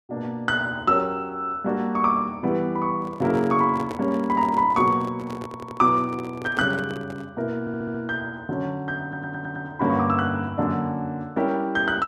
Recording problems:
handling noise; from 3 to 7.5 s; peak -5 dB vs average level
audio stuttering; at 5.5 s, at 7.5 s and at 9 s

